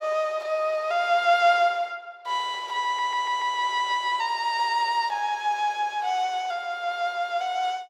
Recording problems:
stutter; at 3 s

